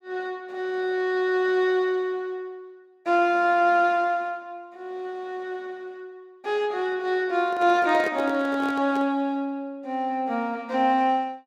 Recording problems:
microphone handling noise; from 7.5 to 9 s; peak -4 dB vs average level

